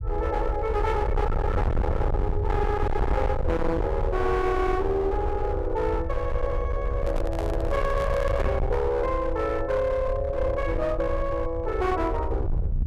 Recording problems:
distortion; hard clipping, signal-to-distortion ratio 6 dB
low-frequency rumble; below 98 Hz, SNR 3 dB
microphone handling noise; from 7 to 8.5 s; peak -3 dB vs average level

